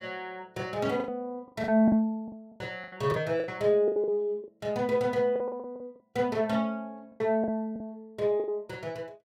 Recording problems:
packet loss; 11% of the sound replaced, filled with the last packet

